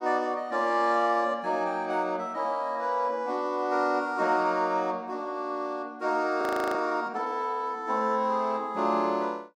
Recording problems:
audio freezing; at 6.5 s

